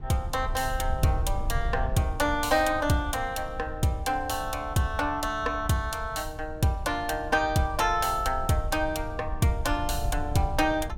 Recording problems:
rumble; below 76 Hz, SNR 9 dB

